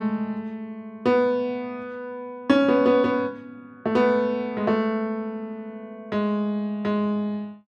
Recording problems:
none

